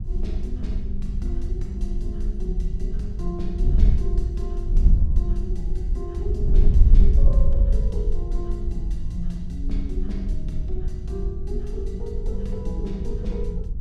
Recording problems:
wind noise; below 56 Hz, SNR -9 dB

